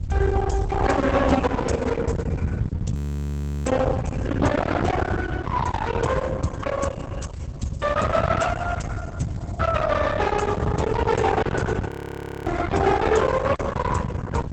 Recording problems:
lossy codec; Opus, then Opus, log-spectral distance 3 dB, nothing above 17.1 kHz
distortion; hard clipping, uneven, signal-to-distortion ratio 6 dB
rumble; below 620 Hz, SNR 5 dB
wind noise; below 270 Hz, SNR 7 dB
frozen audio; at 3 s for 0.5 s and at 12 s for 0.5 s

